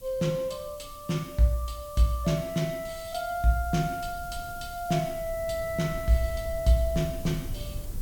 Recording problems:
hiss; slope +3 dB per octave, SNR 18 dB
low-frequency rumble; below 96 Hz, SNR 14 dB

